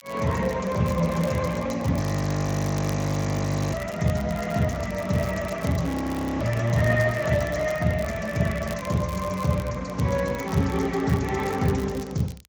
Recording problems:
lossy compression; Speex, log-spectral distance 4 dB
crackle; vinyl, SNR 20 dB
audio freezing; at 2 s for 1.5 s and at 6 s for 0.5 s

